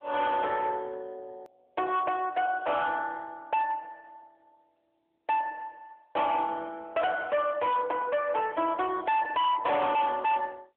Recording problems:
phone line; 260 Hz to 3.5 kHz, AMR-NB
distorted audio; hard clipping, uneven, signal-to-distortion ratio 6 dB
edit click; at 1.5 s

